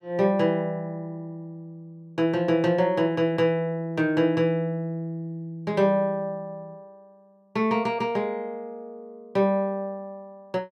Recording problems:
none

